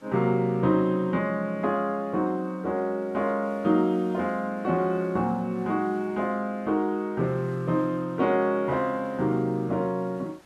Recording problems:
hiss; slope -4 dB per octave, SNR 30 dB

